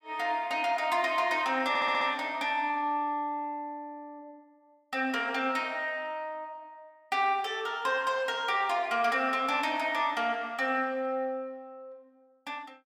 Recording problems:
audio stuttering; at 1.5 s

